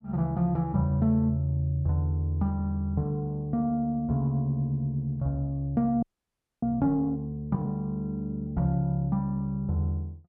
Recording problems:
frozen audio; at 6 s for 0.5 s

